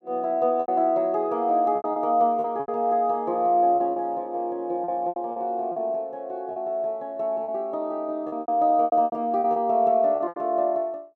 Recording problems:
lost packets; 11% of the sound replaced, filled with repeated pitch periods

